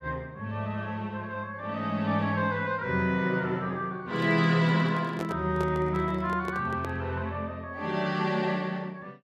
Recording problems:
microphone handling noise; from 4 to 7 s; peak -3 dB vs average level

